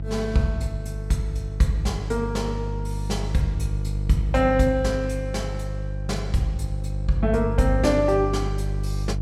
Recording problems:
hum; 50 Hz, harmonics up to 350 Hz, SNR 4 dB

